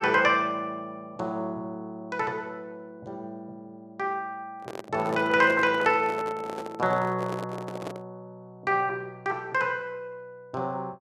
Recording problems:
microphone handling noise; from 4.5 to 8 s; peak -4 dB vs average level

